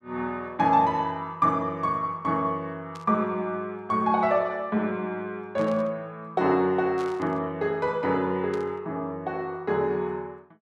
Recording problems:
burst of static; 4 times, first at 3 s; peak -14 dB vs average level

